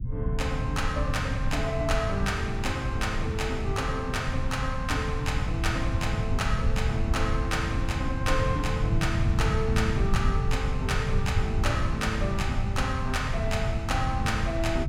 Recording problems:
rumble; below 120 Hz, SNR 0 dB

